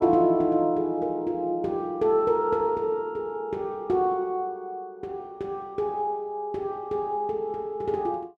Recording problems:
none

